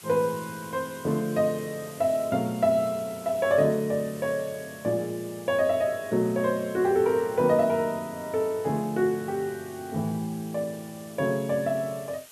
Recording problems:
hiss; slope +1 dB per octave, SNR 19 dB

